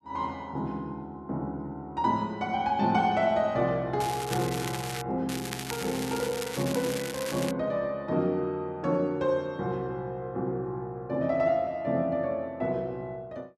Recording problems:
crackle; from 4 to 5 s and from 5.5 to 7.5 s; loose cable, SNR 8 dB

